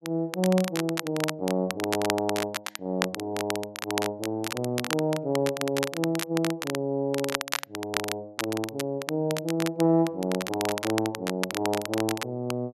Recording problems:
crackling; vinyl, SNR 5 dB

